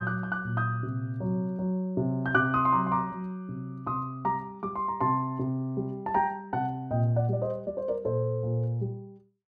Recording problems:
none

